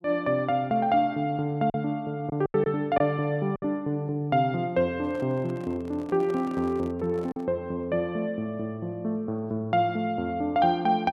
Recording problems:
lost packets; 3% of the sound replaced, filled with silence
microphone handling noise; from 5 to 7.5 s; peak -12 dB vs average level

